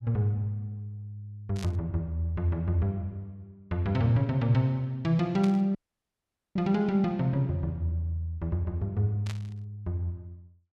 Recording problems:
burst of static; at 1.5 s, at 5.5 s and at 9.5 s; peak -8 dB vs average level
dropout; at 6 s for 1 s

